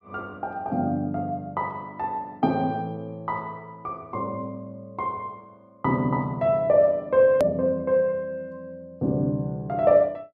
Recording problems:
edit click; at 7.5 s

